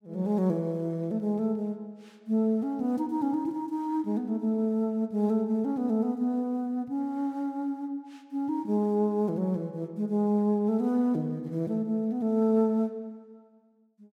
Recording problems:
none

